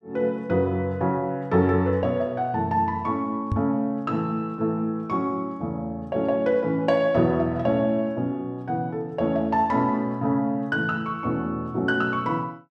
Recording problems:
knock on the microphone; at 3.5 s; peak +2 dB vs average level

